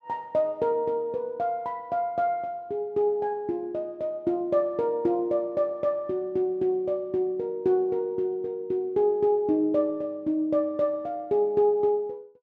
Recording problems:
none

